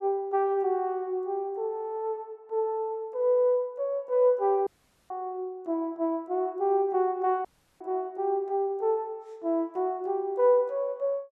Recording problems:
audio cutting out; at 4.5 s and at 7.5 s

